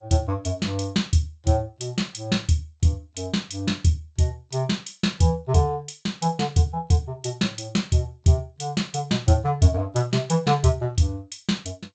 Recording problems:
codec artefacts; G.722, log-spectral distance 3 dB, nothing above 7.6 kHz

